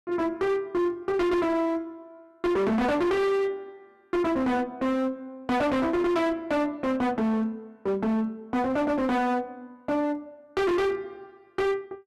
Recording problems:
distorted audio; hard clipping, signal-to-distortion ratio 7 dB

